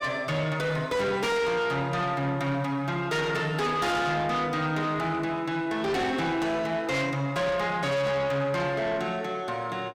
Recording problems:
distortion; soft clipping, signal-to-distortion ratio 8 dB

